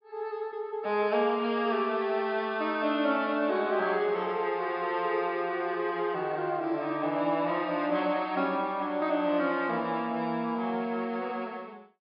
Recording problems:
treble cut off; nothing above 5.1 kHz

